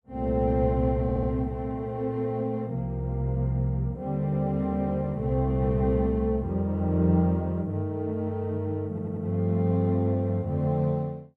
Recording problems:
audio stuttering; at 1 s and at 9 s

